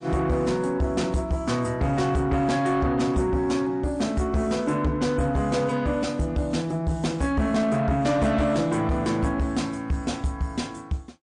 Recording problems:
lossy codec; MP3, log-spectral distance 2 dB, nothing above 9 kHz
distorted audio; soft clipping, signal-to-distortion ratio 12 dB

